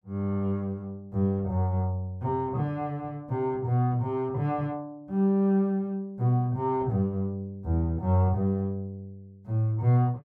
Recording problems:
none

